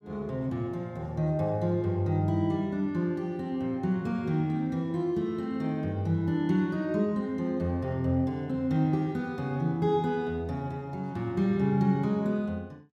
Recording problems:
none

